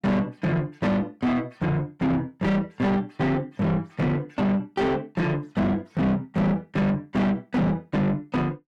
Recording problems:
distortion; soft clipping, signal-to-distortion ratio 6 dB

